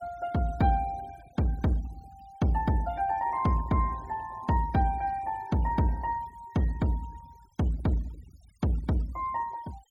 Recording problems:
noise reduction artefacts; signal-to-artefact ratio 24 dB

